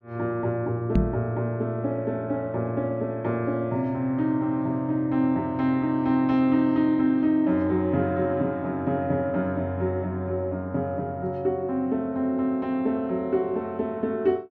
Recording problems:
microphone bump; at 1 s; peak +7 dB vs average level

